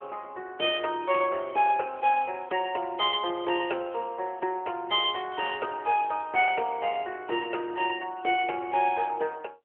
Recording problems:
phone line; 300 Hz to 3.3 kHz, AMR-NB

